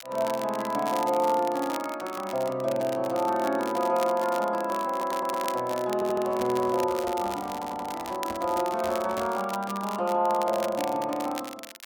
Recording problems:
crackle; vinyl, SNR 15 dB
audio stuttering; at 5 s, at 6 s and at 7.5 s
microphone handling noise; from 6 to 9.5 s; peak -6 dB vs average level

